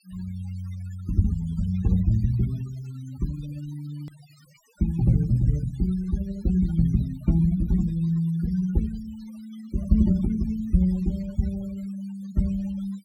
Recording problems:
denoising artefacts; signal-to-artefact ratio 22 dB
edit click; at 4 s

